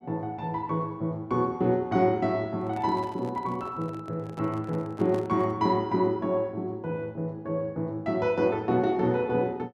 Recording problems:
microphone handling noise; from 2.5 to 5.5 s; peak -10 dB vs average level

